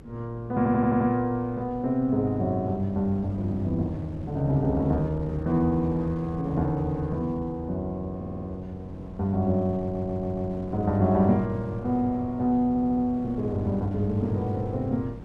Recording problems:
electrical hum; 50 Hz, harmonics up to 500 Hz, SNR 23 dB
wind on the microphone; below 300 Hz, SNR 15 dB
audio stuttering; 4 times, first at 0.5 s

